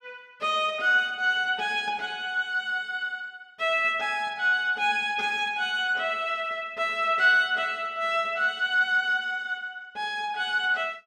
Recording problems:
none

